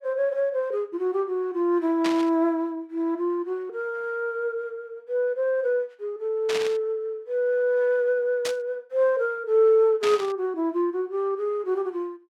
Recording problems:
static burst; 4 times, first at 2 s; peak -2 dB vs average level

